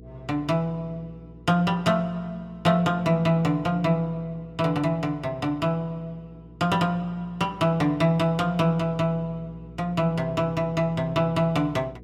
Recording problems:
hum; 60 Hz, harmonics up to 480 Hz, SNR 22 dB

